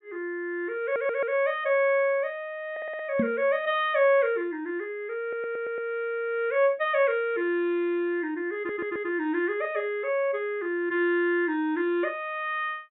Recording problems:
treble cut off; nothing above 4 kHz
stutter; 4 times, first at 1 s
microphone thump; at 3 s; peak +3 dB vs average level

